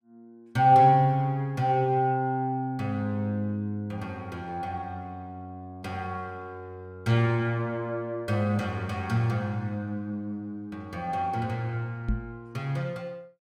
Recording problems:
microphone thump; at 12 s; peak +2 dB vs average level

